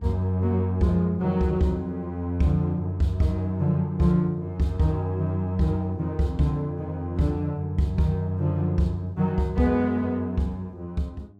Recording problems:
electrical hum; 50 Hz, harmonics up to 700 Hz, SNR 28 dB

